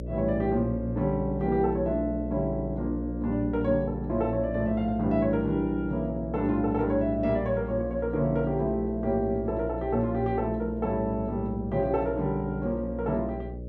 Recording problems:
electrical hum; 60 Hz, harmonics up to 600 Hz, SNR 9 dB

